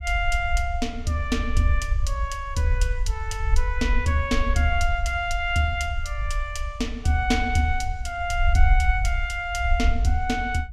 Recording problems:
rumble; below 60 Hz, SNR 2 dB

